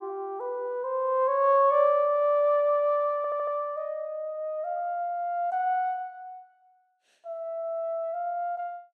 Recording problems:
audio stuttering; at 3 s

